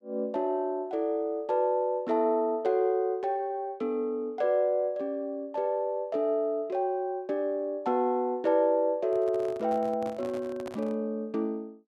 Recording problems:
microphone handling noise; from 9 to 11 s; peak -9 dB vs average level

